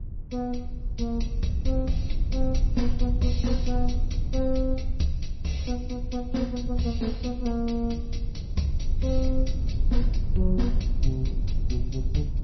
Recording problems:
codec artefacts; MP3, log-spectral distance 2 dB, nothing above 5.8 kHz
rumble; below 64 Hz, SNR 0 dB

